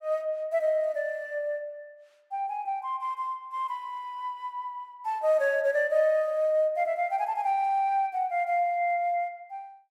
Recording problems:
none

